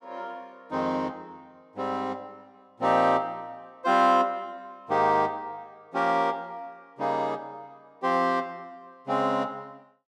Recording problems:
none

